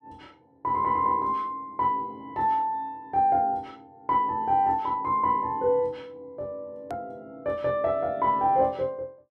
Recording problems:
edit click; at 7 s

